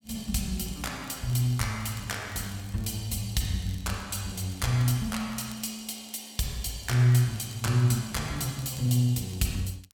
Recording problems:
crackle; vinyl, SNR 25 dB

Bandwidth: 17 kHz